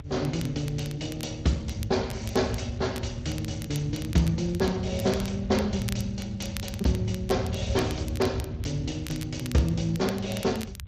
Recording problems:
lossy codec; Speex, log-spectral distance 3 dB
rumble; below 120 Hz, SNR 9 dB
crackling; vinyl, SNR 16 dB

